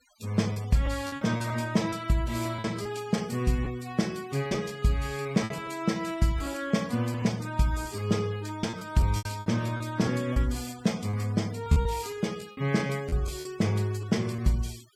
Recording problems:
denoising artefacts; signal-to-artefact ratio 21 dB
lost packets; 9% of the sound replaced, filled with repeated pitch periods

